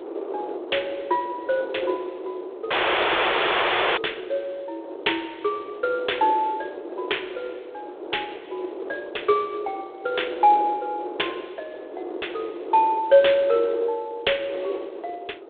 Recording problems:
phone line; 320 Hz to 3.6 kHz, G.726
wind on the microphone; below 540 Hz, SNR 11 dB
dropout; at 2.5 s for 1.5 s

